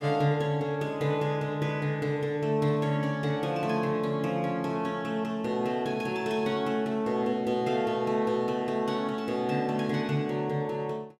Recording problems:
none

